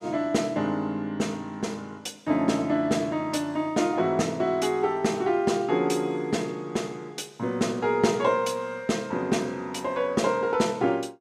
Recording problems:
none

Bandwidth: 14.5 kHz